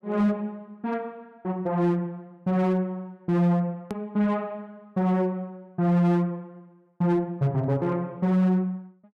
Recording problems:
distorted audio; hard clipping, signal-to-distortion ratio 11 dB
click at an edit; at 4 s

